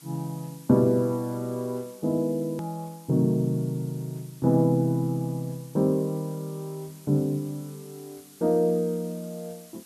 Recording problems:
background hiss; slope 0 dB per octave, SNR 23 dB
click at an edit; at 2.5 s

